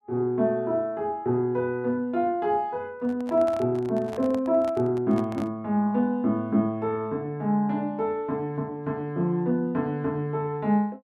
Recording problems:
microphone handling noise; from 3 to 5.5 s; peak -8 dB vs average level

